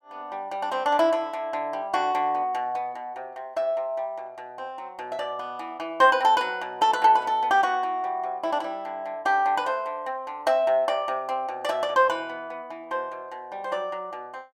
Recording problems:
none

